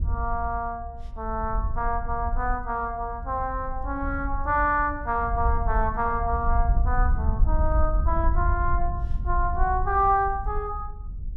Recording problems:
wind noise; below 66 Hz, SNR 2 dB

